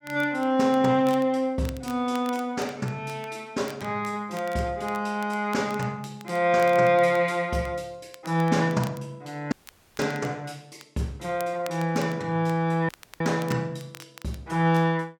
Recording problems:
crackling; vinyl, SNR 22 dB
audio cutting out; at 9.5 s and at 13 s

